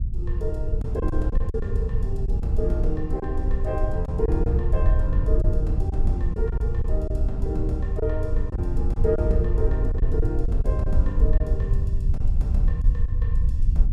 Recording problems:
low-frequency rumble; below 70 Hz, SNR -5 dB
lost packets; 5% of the sound replaced, filled with silence

